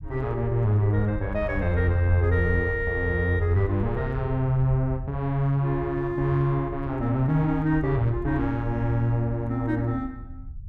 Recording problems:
rumble; below 90 Hz, SNR 11 dB

